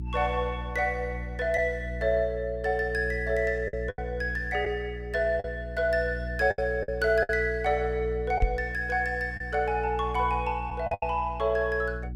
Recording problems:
hum; 60 Hz, harmonics up to 360 Hz, SNR 9 dB
lost packets; 5% of the sound replaced, filled with the last packet
knock on the microphone; at 8.5 s; peak +7 dB vs average level

